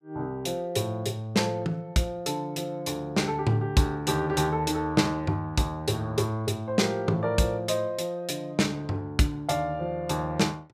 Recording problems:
none

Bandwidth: 14.5 kHz